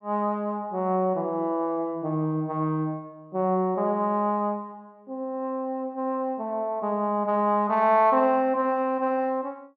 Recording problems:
none

